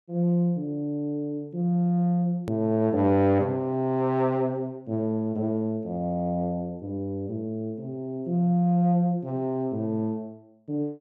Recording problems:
hard cut with a click; at 2.5 s

